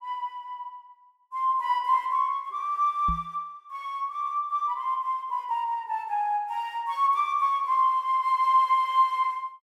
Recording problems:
microphone thump; at 3 s; peak -3 dB vs average level

